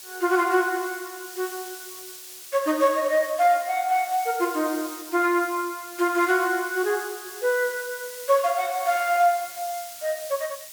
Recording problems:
background hiss; slope +3 dB per octave, SNR 14 dB

